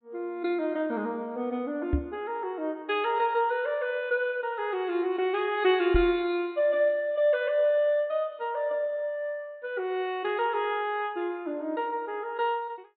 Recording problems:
treble cut off; nothing above 4 kHz
microphone bump; at 2 s and at 6 s; peak +5 dB vs average level

